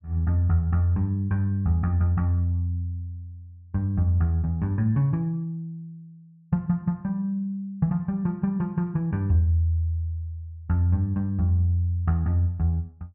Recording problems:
none

